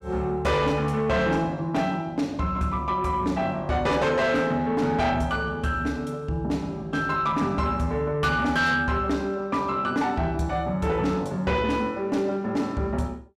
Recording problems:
distorted audio; soft clipping, signal-to-distortion ratio 11 dB

